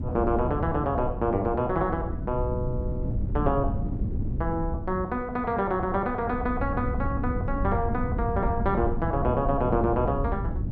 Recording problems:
wind noise; below 150 Hz, SNR 4 dB

